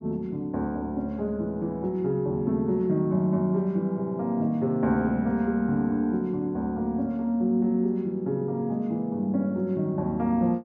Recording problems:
none

